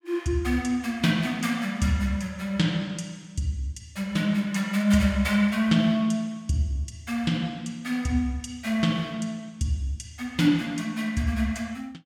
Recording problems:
none

